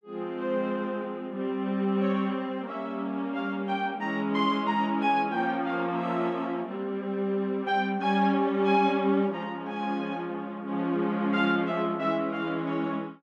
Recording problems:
none

